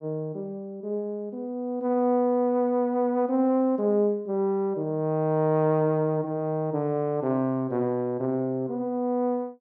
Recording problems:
none

